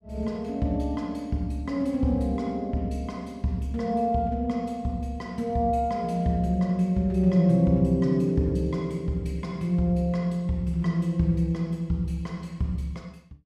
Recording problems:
none

